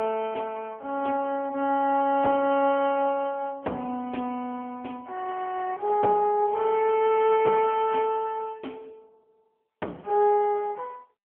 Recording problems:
telephone audio; 220 Hz to 3.3 kHz, AMR-NB

